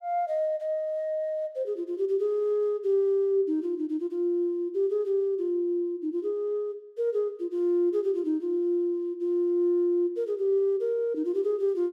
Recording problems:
none

